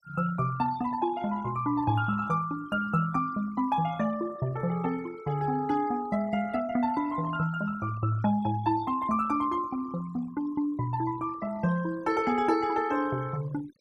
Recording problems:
denoising artefacts; signal-to-artefact ratio 19 dB

